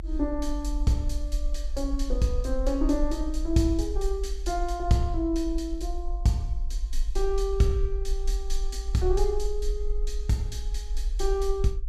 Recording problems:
rumble; below 50 Hz, SNR 4 dB

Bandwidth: 14.5 kHz